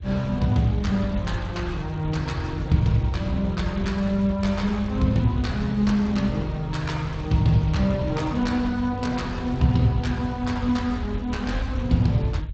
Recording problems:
lossy codec; Speex, log-spectral distance 2 dB
rumble; below 90 Hz, SNR 10 dB

